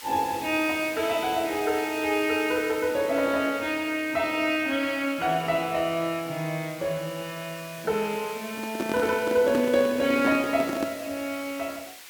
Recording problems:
hiss; SNR 15 dB
handling noise; from 8.5 to 11 s; peak +1 dB vs average level

